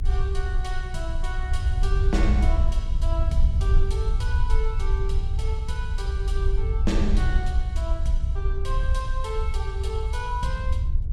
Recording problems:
rumble; below 64 Hz, strongest tone 24 Hz, SNR -7 dB

